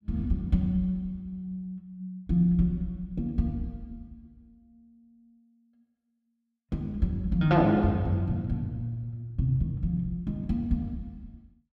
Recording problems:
none

